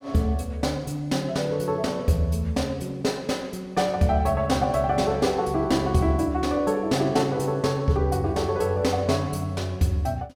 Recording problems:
none

